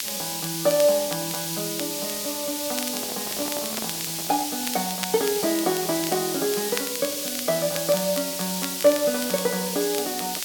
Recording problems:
hiss; SNR 1 dB
crackle; vinyl, SNR 11 dB
microphone handling noise; from 3 to 4.5 s; peak -4 dB vs average level

